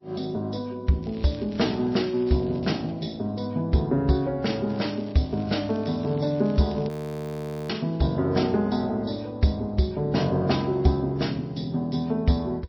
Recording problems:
lossy compression; MP3, log-spectral distance 3 dB
crackle; from 1 to 3 s and from 4.5 to 7 s; loose cable, SNR 26 dB
audio freezing; at 7 s for 1 s

